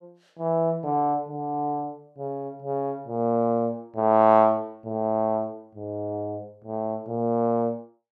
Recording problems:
none

